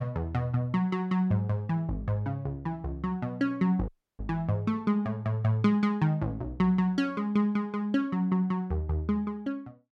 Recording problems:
dropout; at 4 s

